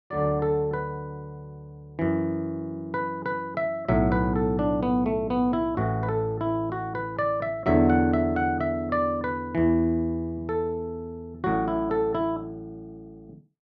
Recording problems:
none

